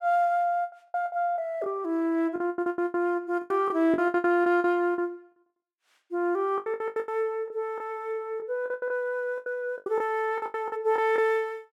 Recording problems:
lost packets; 17% of the sound replaced, filled with the last packet

